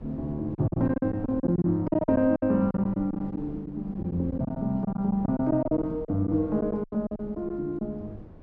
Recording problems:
wind on the microphone; below 300 Hz, SNR 17 dB
lost packets; 14% of the sound replaced, filled with silence

